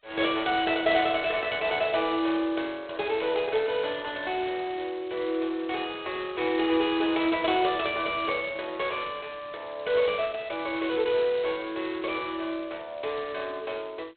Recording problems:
telephone audio; 340 Hz to 3.9 kHz, G.726

